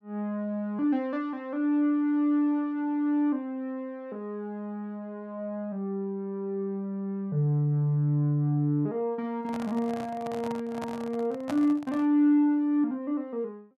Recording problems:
handling noise; from 9.5 to 12 s; peak -3 dB vs average level

